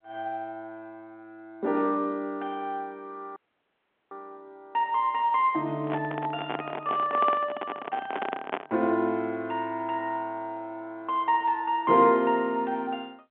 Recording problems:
telephone audio; 220 Hz to 3.5 kHz, G.711
dropout; at 3.5 s for 1 s
microphone handling noise; from 6 to 8.5 s; peak +1 dB vs average level

